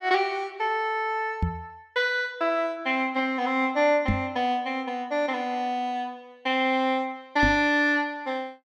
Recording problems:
knock on the microphone; at 1.5 s, at 4 s and at 7.5 s; peak +3 dB vs average level

